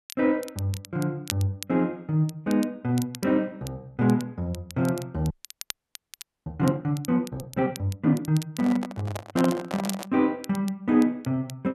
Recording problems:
crackling; vinyl, SNR 16 dB
audio freezing; at 5.5 s for 1 s
microphone handling noise; from 8.5 to 10 s; peak +1 dB vs average level

